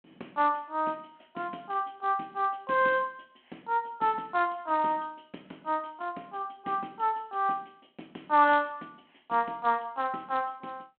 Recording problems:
phone line; 220 Hz to 3.5 kHz, G.726

